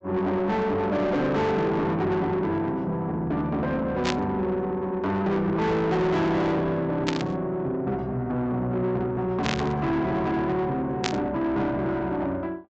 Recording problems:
treble cut off; nothing above 8 kHz
distortion; soft clipping, signal-to-distortion ratio 7 dB
static burst; 4 times, first at 4 s; peak +3 dB vs average level

